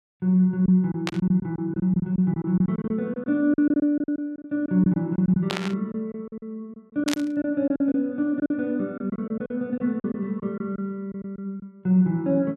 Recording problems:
lost packets; 12% of the sound replaced, filled with silence
static burst; at 1 s, at 5.5 s and at 7 s; peak +1 dB vs average level

